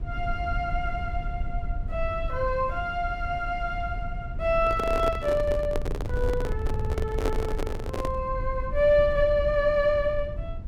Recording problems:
rumble; below 74 Hz, SNR 7 dB
handling noise; from 4.5 to 8.5 s; peak +1 dB vs average level
stutter; at 6.5 s

